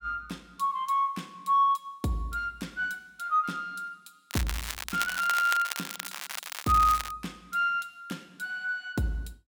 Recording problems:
crackle; from 4.5 to 7 s; loose cable, SNR 7 dB

